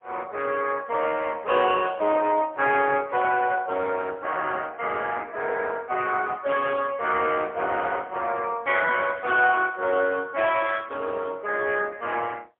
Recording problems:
phone line; 320 Hz to 3.3 kHz, AMR-NB, then MP3

